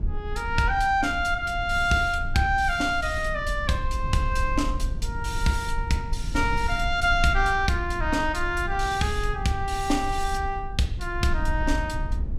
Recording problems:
low-frequency rumble; below 64 Hz, SNR 7 dB

